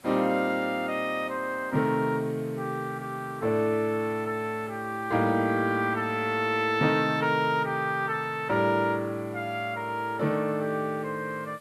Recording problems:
background hiss; slope -2 dB per octave, SNR 27 dB

